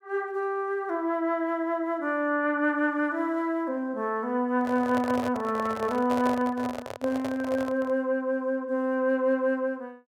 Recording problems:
handling noise; from 4.5 to 8 s; peak -2 dB vs average level

